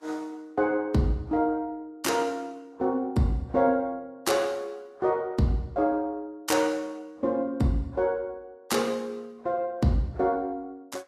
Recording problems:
lossy codec; Vorbis, log-spectral distance 2 dB, nothing above 13.8 kHz

